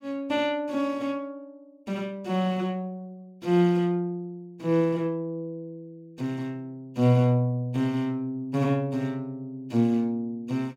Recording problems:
none

